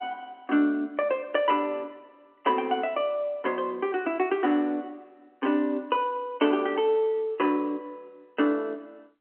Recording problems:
telephone audio; 240 Hz to 3.2 kHz, G.711

